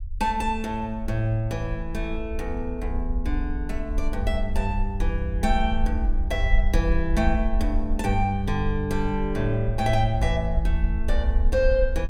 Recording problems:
rumble; below 58 Hz, SNR 2 dB

